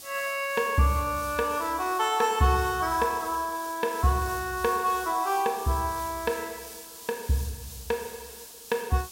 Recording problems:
hiss; SNR 14 dB

